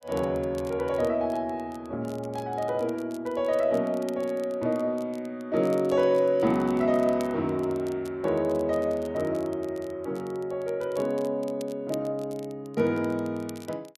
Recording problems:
crackle; vinyl, SNR 25 dB

